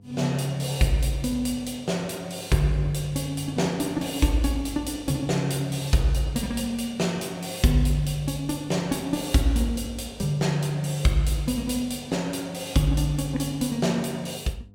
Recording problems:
hum; 50 Hz, harmonics up to 700 Hz, SNR 25 dB

